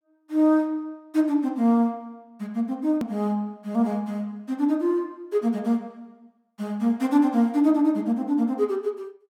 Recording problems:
hard cut with a click; at 3 s

